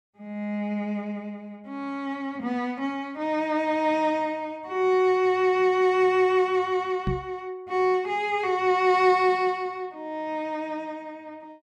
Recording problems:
microphone thump; at 7 s; peak +1 dB vs average level

